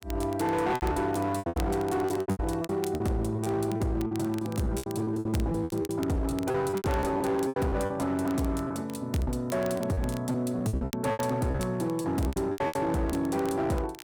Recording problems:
distorted audio; hard clipping, signal-to-distortion ratio 11 dB
crackle; vinyl, SNR 19 dB
lost packets; 16% of the sound replaced, filled with repeated pitch periods

